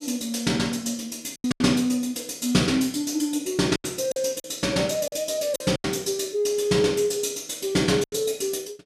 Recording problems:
packet loss; 6% of the sound replaced, filled with silence

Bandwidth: 15 kHz